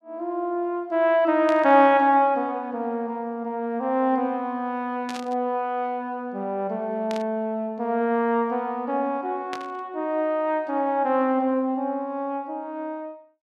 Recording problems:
burst of static; 4 times, first at 1.5 s; peak -7 dB vs average level

